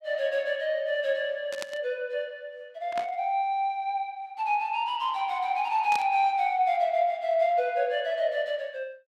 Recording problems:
static burst; at 1.5 s, at 3 s and at 6 s; peak -4 dB vs average level

